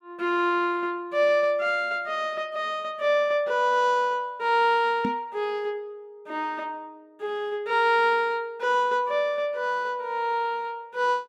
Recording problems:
microphone bump; at 5 s; peak -1 dB vs average level

